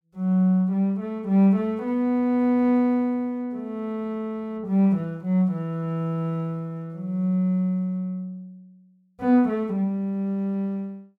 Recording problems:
none

